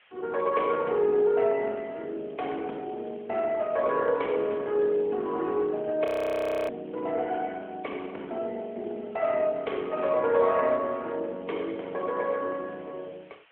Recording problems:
phone line; 300 Hz to 3.3 kHz, AMR-NB
hiss; SNR 29 dB
frozen audio; at 6 s for 0.5 s

